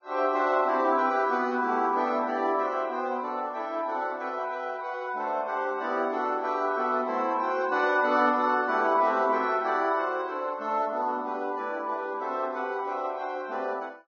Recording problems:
lossy codec; Vorbis, log-spectral distance 2 dB, nothing above 6.3 kHz

